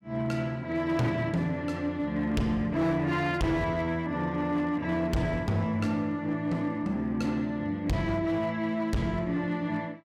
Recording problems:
distorted audio; hard clipping, signal-to-distortion ratio 11 dB

